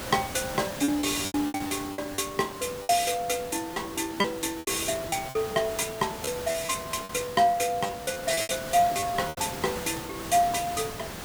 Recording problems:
hiss; slope -4 dB per octave, SNR 10 dB
lost packets; 10% of the sound replaced, filled with repeated pitch periods

